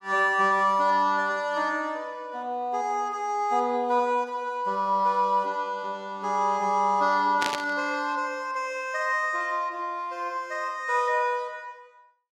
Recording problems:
burst of static; at 7.5 s; peak +1 dB vs average level

